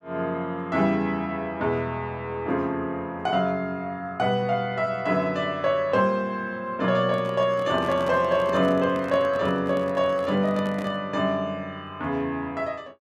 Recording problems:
microphone handling noise; from 7 to 11 s; peak -6 dB vs average level

